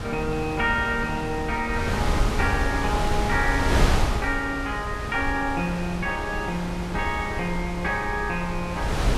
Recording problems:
wind on the microphone; below 510 Hz, SNR 2 dB

